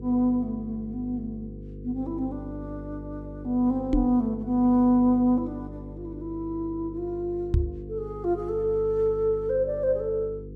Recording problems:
hum; 50 Hz, harmonics up to 500 Hz, SNR 14 dB
microphone bump; at 4 s and at 7.5 s; peak +6 dB vs average level

